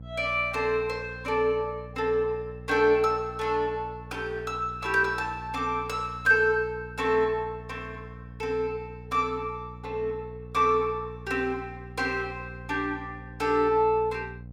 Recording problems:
electrical hum; 60 Hz, harmonics up to 540 Hz, SNR 16 dB

